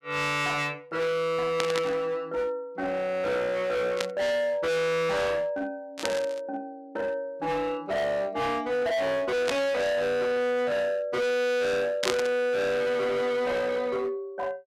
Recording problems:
distortion; hard clipping, signal-to-distortion ratio 6 dB
burst of static; 5 times, first at 1.5 s; peak +4 dB vs average level

